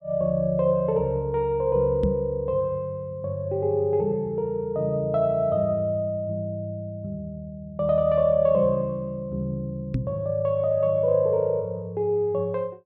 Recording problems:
microphone bump; at 2 s and at 10 s; peak +2 dB vs average level

